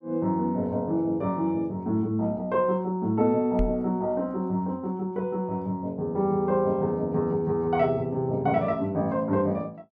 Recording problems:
microphone bump; at 3.5 s; peak 0 dB vs average level

